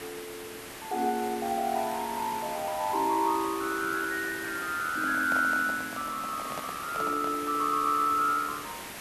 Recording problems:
background hiss; slope -3 dB per octave, SNR 10 dB
microphone handling noise; from 5 to 7.5 s; peak -5 dB vs average level

